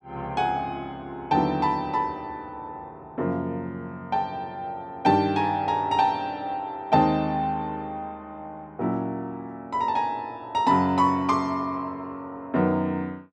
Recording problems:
none

